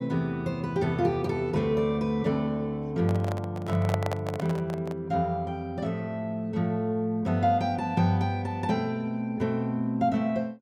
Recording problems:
microphone handling noise; from 3 to 5 s; peak +2 dB vs average level

